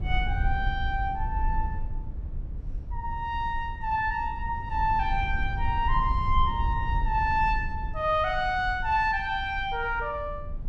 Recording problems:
low-frequency rumble; below 72 Hz, SNR 6 dB

